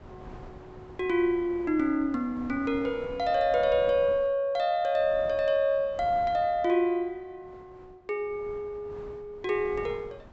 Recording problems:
treble cut off; nothing above 7.8 kHz
wind noise; below 640 Hz, SNR 20 dB

